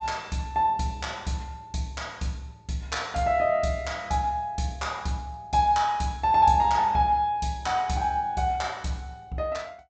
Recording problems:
low-pass filter; nothing above 8 kHz

